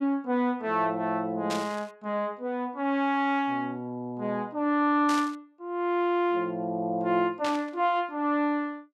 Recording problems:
burst of static; at 1.5 s, at 5 s and at 7.5 s; peak -3 dB vs average level

